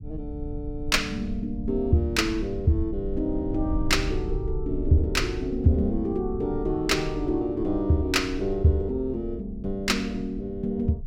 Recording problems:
low-frequency rumble; below 82 Hz, SNR 10 dB

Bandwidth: 16 kHz